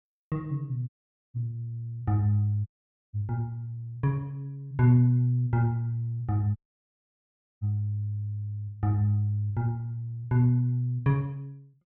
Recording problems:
dropout; at 1 s, at 2.5 s and at 6.5 s for 1 s

